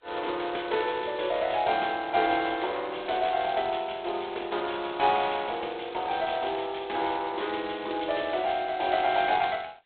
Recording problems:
phone line; 280 Hz to 4 kHz, G.726

